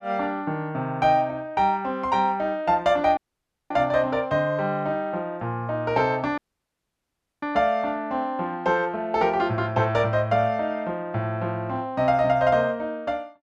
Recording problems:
dropout; at 3 s for 0.5 s and at 6.5 s for 1 s

